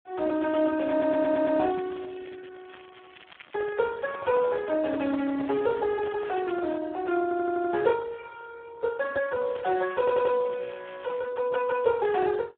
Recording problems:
telephone audio; 240 Hz to 2.1 kHz, Speex
stutter; at 1 s, at 7 s and at 10 s
crackle; from 1.5 to 3.5 s, from 5.5 to 6.5 s and from 9.5 to 11 s; loose cable, SNR 24 dB
microphone handling noise; from 3.5 to 7 s; peak -8 dB vs average level

